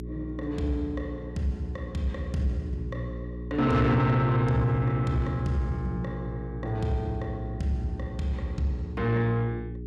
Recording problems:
distorted audio; soft clipping, signal-to-distortion ratio 11 dB
hum; 60 Hz, harmonics up to 420 Hz, SNR 9 dB

